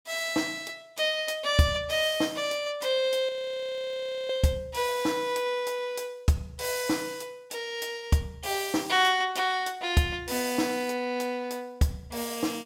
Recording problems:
frozen audio; at 3.5 s for 1 s

